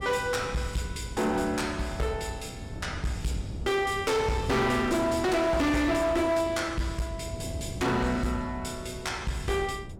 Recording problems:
distorted audio; hard clipping, uneven, signal-to-distortion ratio 8 dB
wind noise; below 260 Hz, SNR 12 dB

